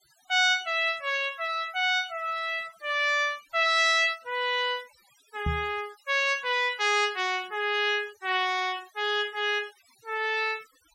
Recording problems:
denoising artefacts; signal-to-artefact ratio 24 dB
knock on the microphone; at 5.5 s; peak -1 dB vs average level

